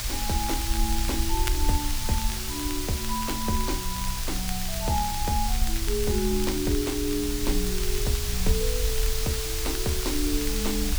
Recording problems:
hum; 60 Hz, harmonics up to 360 Hz, SNR 14 dB
hiss; slope +2 dB per octave, SNR 0 dB
rumble; below 54 Hz, SNR 2 dB
crackling; vinyl, SNR 13 dB

